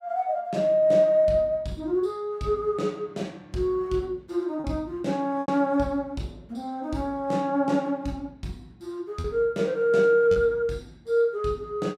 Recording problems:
packet loss; 1.8% of the sound replaced, filled with repeated pitch periods

